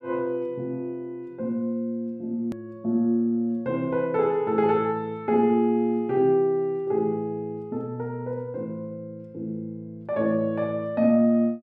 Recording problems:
click at an edit; at 2.5 s

